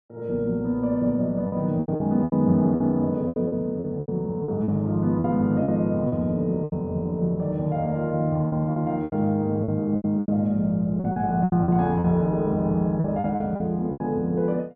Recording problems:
packet loss; 11% of the sound replaced, filled with repeated pitch periods

